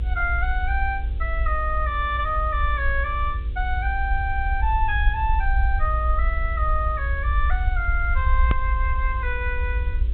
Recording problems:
treble cut off; nothing above 4 kHz
hum; 50 Hz, harmonics up to 550 Hz, SNR 20 dB
hiss; SNR 27 dB
low-frequency rumble; below 60 Hz, SNR 0 dB
click at an edit; at 8.5 s

